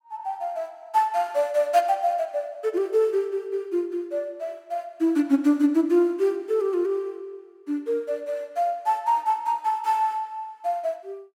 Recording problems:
none

